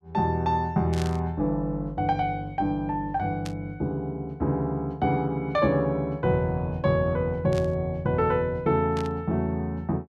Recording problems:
burst of static; 4 times, first at 1 s; peak -7 dB vs average level

